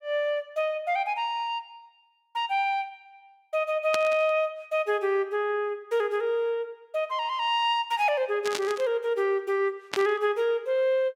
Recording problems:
burst of static; at 4 s, at 8.5 s and at 10 s; peak 0 dB vs average level

